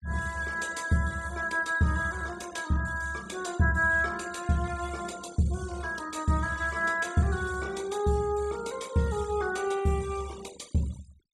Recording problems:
denoising artefacts; signal-to-artefact ratio 20 dB

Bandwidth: 14.5 kHz